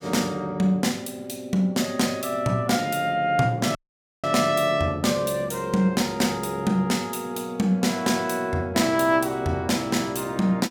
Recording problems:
audio cutting out; at 4 s

